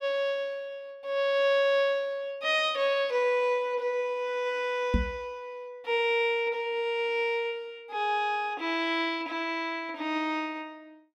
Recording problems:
microphone thump; at 5 s; peak +6 dB vs average level

